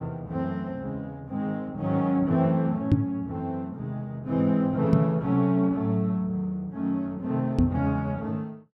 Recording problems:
microphone bump; at 3 s, at 5 s and at 7.5 s; peak +9 dB vs average level

